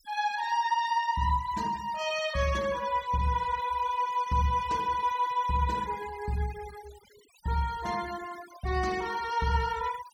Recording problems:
denoising artefacts; signal-to-artefact ratio 17 dB

